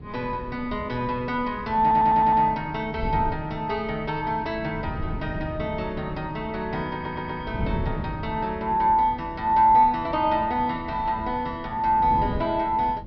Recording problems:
treble missing; nothing above 5.5 kHz
wind noise; below 210 Hz, SNR 12 dB
stutter; at 2 s and at 7 s

